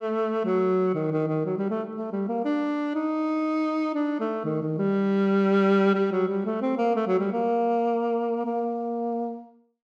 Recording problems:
none

